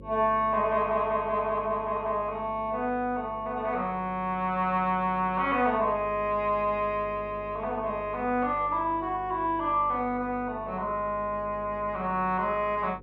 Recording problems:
electrical hum; 50 Hz, harmonics up to 550 Hz, SNR 18 dB

